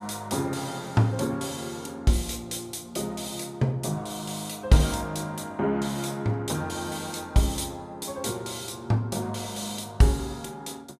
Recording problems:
none

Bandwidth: 14.5 kHz